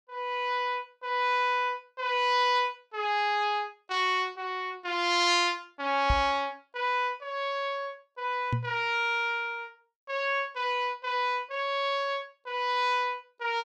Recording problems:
microphone bump; at 6 s and at 8.5 s; peak +3 dB vs average level

